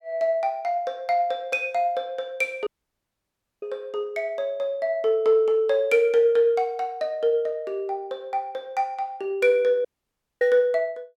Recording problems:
dropout; at 2.5 s for 1 s and at 10 s for 0.5 s

